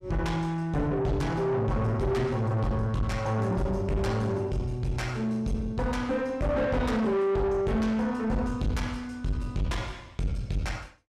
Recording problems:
distortion; soft clipping, signal-to-distortion ratio 7 dB

